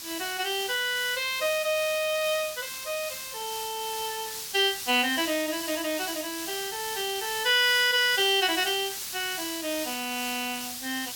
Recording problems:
background hiss; SNR 7 dB

